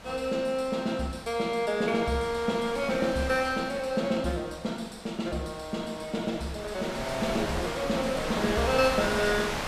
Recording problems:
wind noise; below 2.9 kHz, SNR 7 dB

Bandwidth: 14.5 kHz